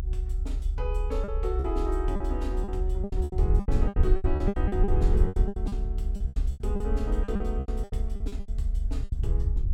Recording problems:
rumble; below 66 Hz, SNR -5 dB
lost packets; 18% of the sound replaced, filled with repeated pitch periods

